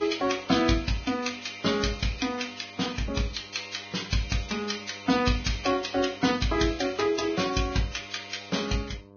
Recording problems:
lossy compression; Vorbis, log-spectral distance 6 dB, nothing above 6.5 kHz
electrical hum; 50 Hz, harmonics up to 1.2 kHz, SNR 23 dB

